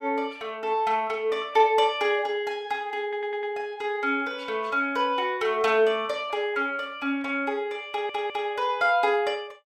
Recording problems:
audio stuttering; at 3 s and at 8 s

